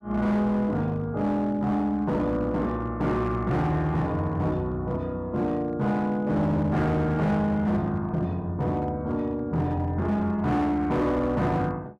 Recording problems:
distorted audio; hard clipping, signal-to-distortion ratio 11 dB

